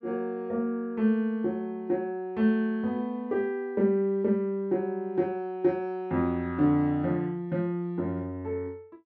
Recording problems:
none

